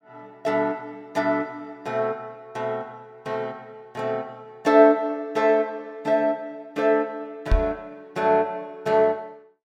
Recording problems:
knock on the microphone; at 7.5 s; peak +5 dB vs average level

